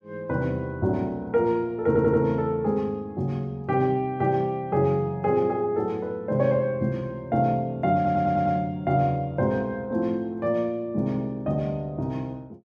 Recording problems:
audio stuttering; at 2 s and at 8 s

